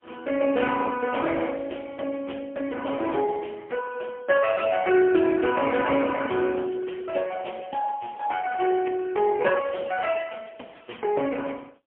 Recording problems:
phone line; 260 Hz to 2.8 kHz, AMR-NB, then MP3

